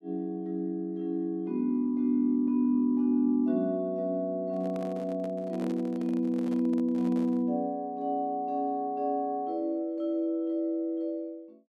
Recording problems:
microphone handling noise; from 4.5 to 7.5 s; peak -8 dB vs average level

